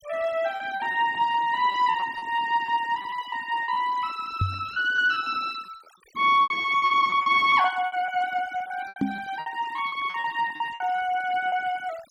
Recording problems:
denoising artefacts; signal-to-artefact ratio 22 dB
packet loss; 13% of the sound replaced, filled with repeated pitch periods
knock on the microphone; at 4.5 s and at 9 s; peak +3 dB vs average level

